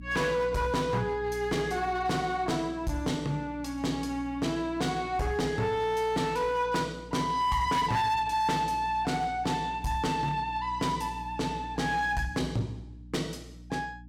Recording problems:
distortion; hard clipping, signal-to-distortion ratio 11 dB
hum; 60 Hz, harmonics up to 300 Hz, SNR 16 dB

